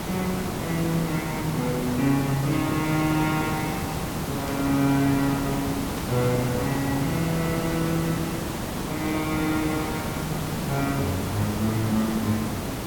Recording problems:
background hiss; slope -5 dB per octave, SNR 3 dB
burst of static; 4 times, first at 2.5 s; peak -10 dB vs average level

